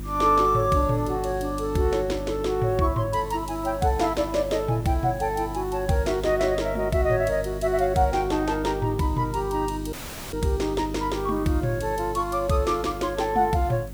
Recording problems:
electrical hum; 50 Hz, harmonics up to 350 Hz, SNR 12 dB
hiss; slope -3 dB per octave, SNR 24 dB
dropout; at 10 s

